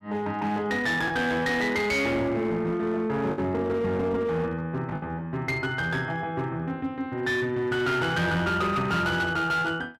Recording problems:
distortion; hard clipping, uneven, signal-to-distortion ratio 11 dB
packet loss; 1.6% of the sound replaced, filled with the last packet

